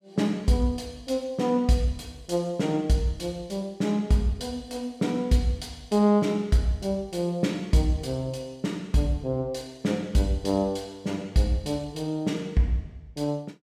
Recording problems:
none

